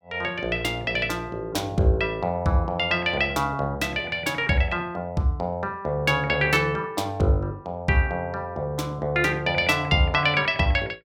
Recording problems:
none

